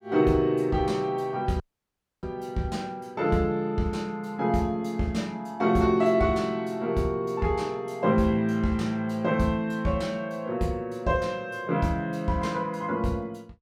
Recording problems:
audio cutting out; at 1.5 s for 0.5 s

